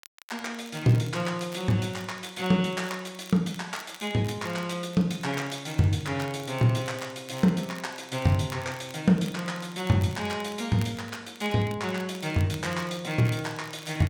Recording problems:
crackle; vinyl, SNR 20 dB

